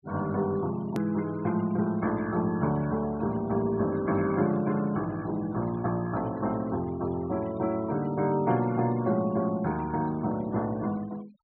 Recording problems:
low-pass filter; nothing above 4.3 kHz
denoising artefacts; signal-to-artefact ratio 23 dB
edit click; at 1 s

